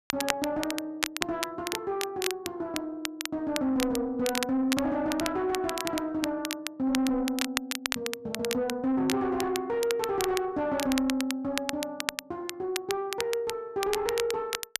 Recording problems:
distorted audio; soft clipping, signal-to-distortion ratio 11 dB
crackling; vinyl, SNR 5 dB

